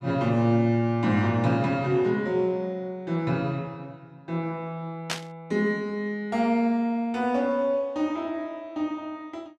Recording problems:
static burst; at 5 s; peak +2 dB vs average level

